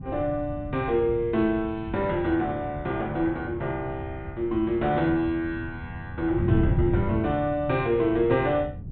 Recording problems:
treble cut off; nothing above 4 kHz
wind noise; below 160 Hz, SNR 7 dB

